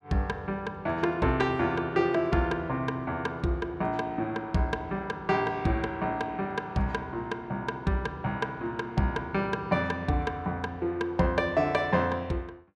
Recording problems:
none

